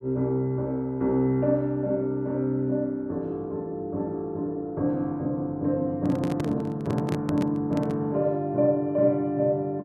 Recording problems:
handling noise; from 6 to 8 s; peak 0 dB vs average level

